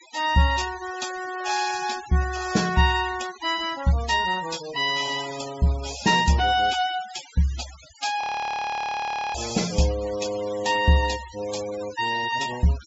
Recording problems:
treble missing; nothing above 8 kHz
denoising artefacts; signal-to-artefact ratio 15 dB
audio freezing; at 8 s for 1 s

